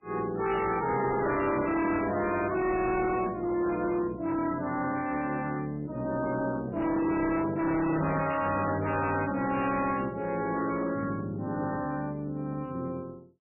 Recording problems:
codec artefacts; MP3, then MP3, log-spectral distance 4 dB, nothing above 2.7 kHz
distortion; hard clipping, uneven, signal-to-distortion ratio 7 dB

